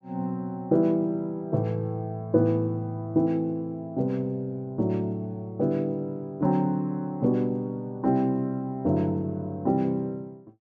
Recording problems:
none

